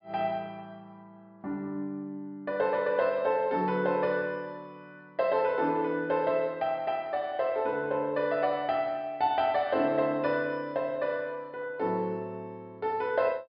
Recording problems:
low-pass filter; nothing above 5.5 kHz

